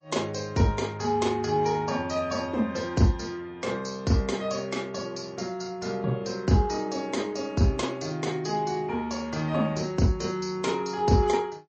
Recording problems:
lossy compression; MP3, log-spectral distance 4 dB, nothing above 7.3 kHz

